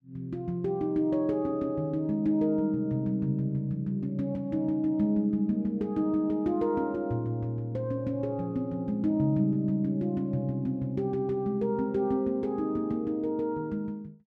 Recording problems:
none

